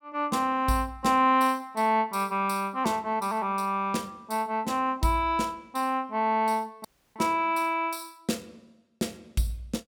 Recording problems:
dropout; at 7 s

